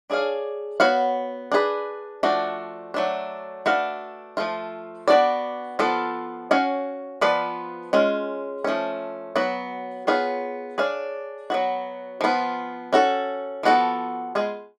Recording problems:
none

